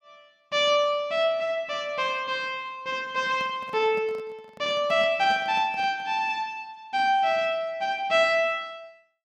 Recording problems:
handling noise; from 3 to 6 s; peak -12 dB vs average level

